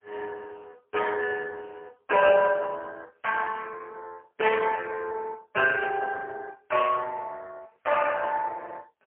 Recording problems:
phone line; 370 Hz to 3.1 kHz, AMR-NB, then MP3

